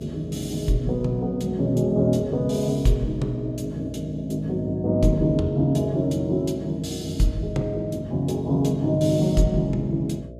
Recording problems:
hum; 60 Hz, harmonics up to 660 Hz, SNR 18 dB

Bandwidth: 14.5 kHz